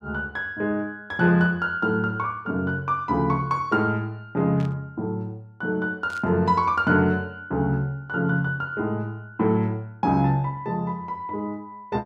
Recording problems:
static burst; at 4.5 s and at 6 s; peak -15 dB vs average level

